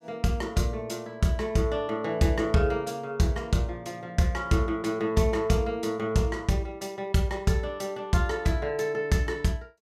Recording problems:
none

